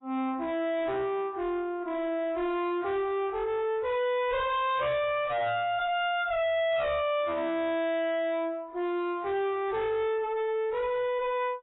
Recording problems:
lossy compression; AAC, log-spectral distance 2 dB, nothing above 3.3 kHz
distorted audio; soft clipping, signal-to-distortion ratio 6 dB

